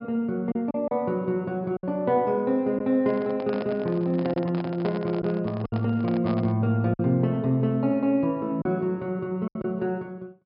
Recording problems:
treble cut off; nothing above 5.2 kHz
packet loss; 4% of the sound replaced, filled with silence
microphone handling noise; from 3 to 6.5 s; peak -5 dB vs average level

